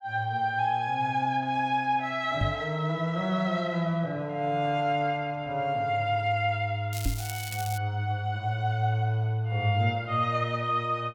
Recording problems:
microphone thump; at 2.5 s and at 7 s; peak +3 dB vs average level
crackle; at 7 s; loose cable, SNR 11 dB

